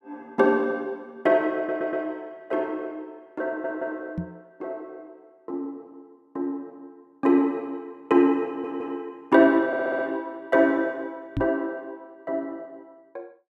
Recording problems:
audio stuttering; 4 times, first at 1.5 s
microphone thump; at 4 s and at 11 s; peak +1 dB vs average level

